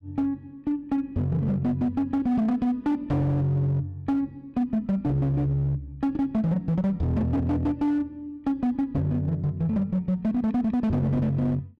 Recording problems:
distorted audio; hard clipping, signal-to-distortion ratio 11 dB

